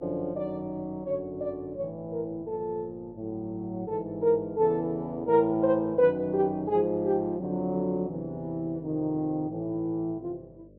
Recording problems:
electrical hum; 50 Hz, harmonics up to 600 Hz, SNR 25 dB

